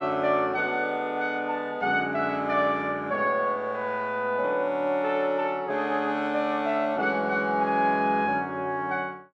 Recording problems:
none

